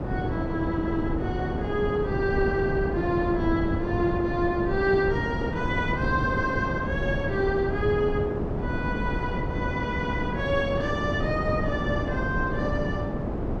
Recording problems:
wind noise; below 410 Hz, SNR 1 dB

